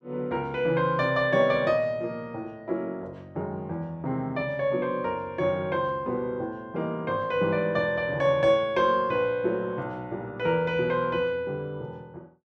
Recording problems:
none

